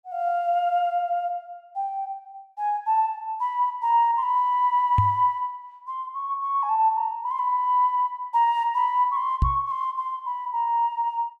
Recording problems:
microphone thump; at 5 s and at 9.5 s; peak +5 dB vs average level

